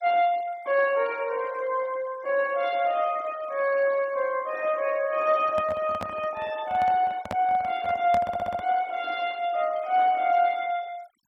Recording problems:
noise reduction artefacts; signal-to-artefact ratio 23 dB
microphone handling noise; from 5.5 to 9 s; peak -3 dB vs average level
stutter; at 8 s

